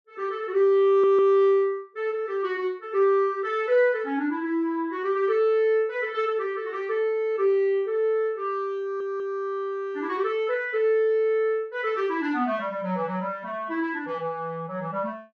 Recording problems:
audio stuttering; at 1 s and at 9 s

